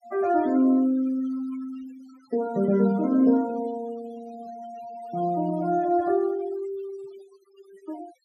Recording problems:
noise reduction artefacts; signal-to-artefact ratio 20 dB

